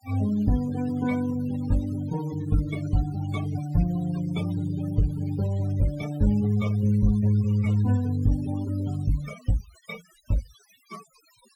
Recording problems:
noise reduction artefacts; signal-to-artefact ratio 18 dB

